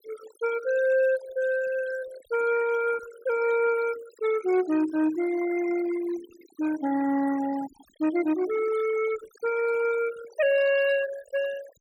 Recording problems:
noise reduction artefacts; signal-to-artefact ratio 16 dB

